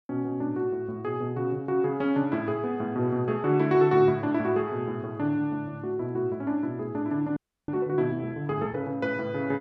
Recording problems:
audio freezing; at 7.5 s

